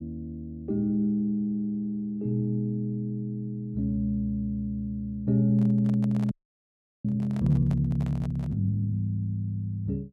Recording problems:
microphone handling noise; from 5.5 to 8.5 s; peak -12 dB vs average level
frozen audio; at 6.5 s for 0.5 s

